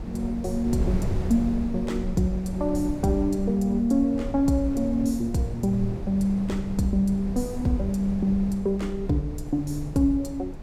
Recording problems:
wind noise; below 160 Hz, SNR 9 dB

